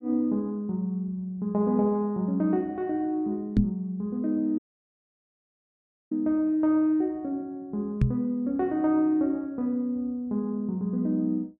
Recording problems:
microphone thump; at 3.5 s and at 8 s; peak +8 dB vs average level
dropout; at 4.5 s for 1.5 s

